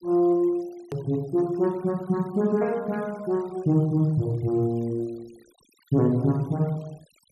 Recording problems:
denoising artefacts; signal-to-artefact ratio 28 dB
edit click; at 1 s

